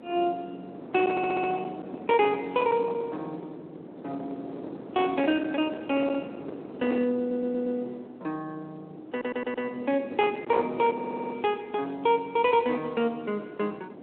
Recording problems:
phone line; 260 Hz to 3.4 kHz, Speex
distorted audio; hard clipping, signal-to-distortion ratio 16 dB
wind noise; below 790 Hz, SNR 12 dB
stutter; 4 times, first at 1 s

